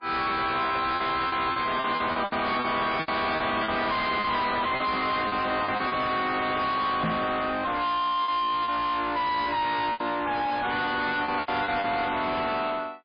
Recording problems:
lossy codec; MP3, log-spectral distance 5 dB, nothing above 4.5 kHz
distorted audio; soft clipping, signal-to-distortion ratio 6 dB
packet loss; 9% of the sound replaced, filled with repeated pitch periods
microphone bump; at 7 s; peak +5 dB vs average level

